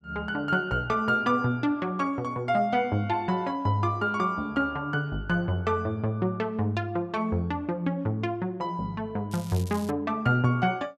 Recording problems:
crackle; at 9.5 s; loose cable, SNR 18 dB

